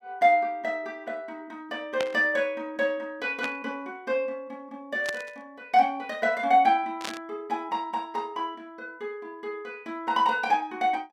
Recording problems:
burst of static; 4 times, first at 2 s; peak 0 dB vs average level

